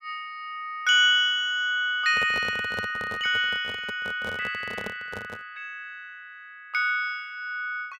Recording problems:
microphone handling noise; from 2 to 5.5 s; peak -7 dB vs average level

